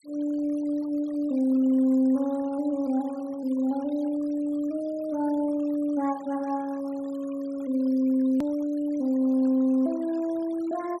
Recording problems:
noise reduction artefacts; signal-to-artefact ratio 25 dB
click at an edit; at 8.5 s

